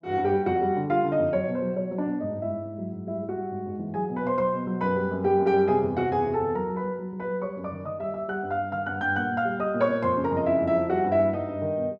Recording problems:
none

